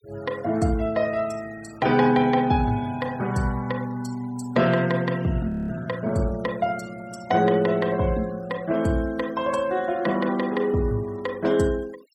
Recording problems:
noise reduction artefacts; signal-to-artefact ratio 23 dB
frozen audio; at 5.5 s

